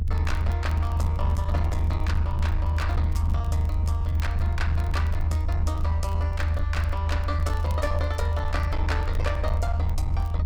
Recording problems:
distorted audio; hard clipping, uneven, signal-to-distortion ratio 11 dB
rumble; below 82 Hz, strongest tone 80 Hz, SNR -8 dB
crackle; vinyl, SNR 21 dB

